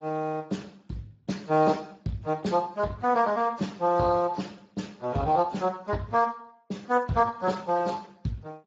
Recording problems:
lossy compression; AAC, then Speex, log-spectral distance 3 dB

